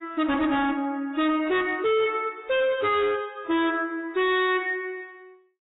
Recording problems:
codec artefacts; AAC, log-spectral distance 2 dB, nothing above 3.5 kHz
distortion; hard clipping, signal-to-distortion ratio 7 dB

